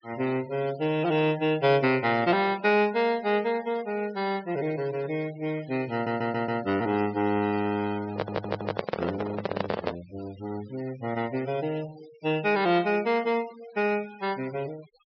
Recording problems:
low-pass filter; nothing above 5.5 kHz
denoising artefacts; signal-to-artefact ratio 19 dB
audio stuttering; at 6 s and at 8 s
handling noise; from 8 to 10 s; peak +3 dB vs average level

